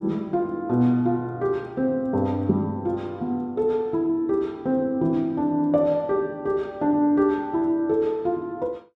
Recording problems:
none

